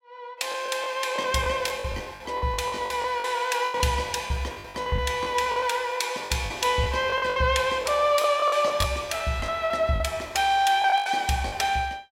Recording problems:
lost packets; 13% of the sound replaced, filled with the last packet

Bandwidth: 16 kHz